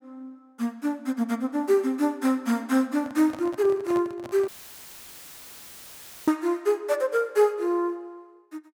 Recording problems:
handling noise; from 3 to 4.5 s; peak -8 dB vs average level
dropout; at 4.5 s for 2 s; filled with static

